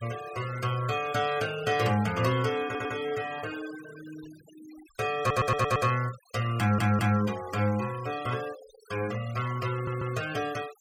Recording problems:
noise reduction artefacts; signal-to-artefact ratio 16 dB
audio stuttering; 4 times, first at 2.5 s

